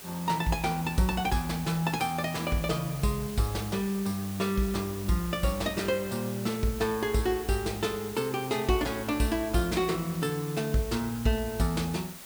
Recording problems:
background hiss; slope -1 dB per octave, SNR 13 dB

